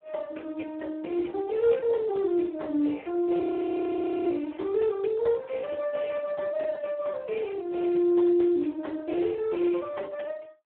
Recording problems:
phone line; 220 Hz to 3.2 kHz, Speex
audio freezing; at 3.5 s for 1 s

